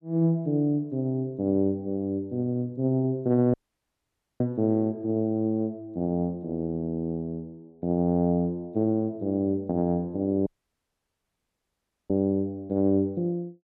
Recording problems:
audio cutting out; at 3.5 s for 1 s and at 10 s for 1.5 s

